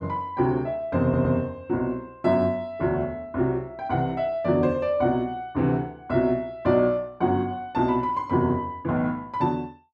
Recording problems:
audio stuttering; at 1 s

